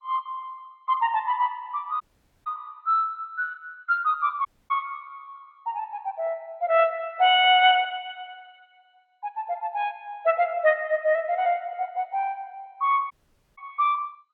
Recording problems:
lossy compression; MP2, log-spectral distance 2 dB
dropout; at 2 s, at 4.5 s and at 13 s

